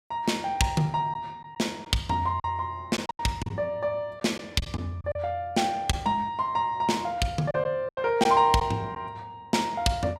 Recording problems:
lost packets; 5% of the sound replaced, filled with silence

